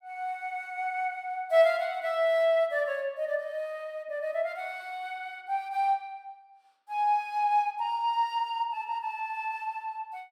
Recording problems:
none

